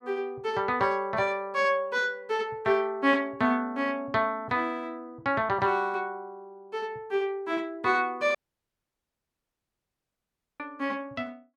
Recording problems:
audio cutting out; at 8.5 s for 2.5 s

